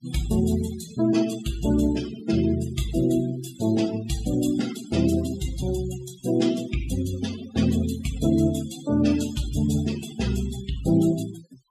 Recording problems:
noise reduction artefacts; signal-to-artefact ratio 13 dB

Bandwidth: 14.5 kHz